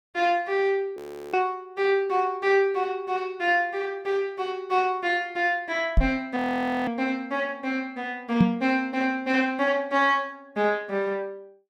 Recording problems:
frozen audio; at 1 s and at 6.5 s for 0.5 s
microphone thump; at 6 s and at 8.5 s; peak +10 dB vs average level

